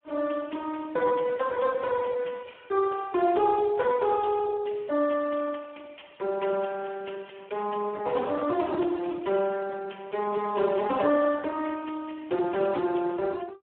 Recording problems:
telephone audio; 280 Hz to 2.8 kHz, Speex

